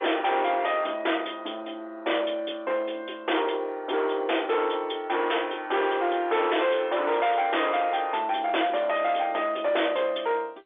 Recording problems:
phone line; 280 Hz to 3.6 kHz, G.711
distorted audio; hard clipping, uneven, signal-to-distortion ratio 7 dB

